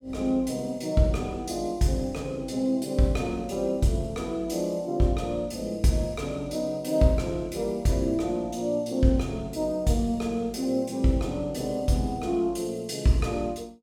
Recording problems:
none

